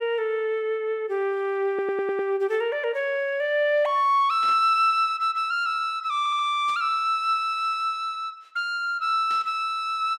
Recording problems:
audio stuttering; at 1.5 s and at 6 s
burst of static; at 4.5 s, at 6.5 s and at 9.5 s; peak -14 dB vs average level

